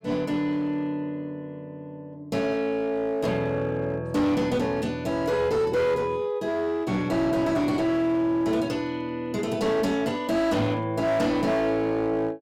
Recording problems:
distortion; hard clipping, uneven, signal-to-distortion ratio 10 dB

